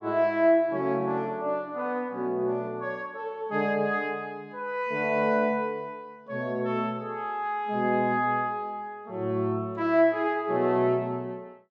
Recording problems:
none

